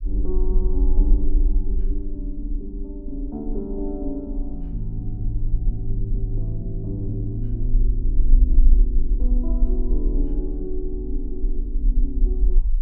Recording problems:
low-frequency rumble; below 42 Hz, SNR -6 dB

